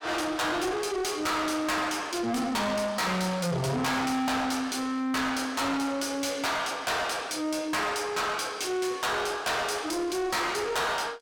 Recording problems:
distortion; soft clipping, signal-to-distortion ratio 6 dB

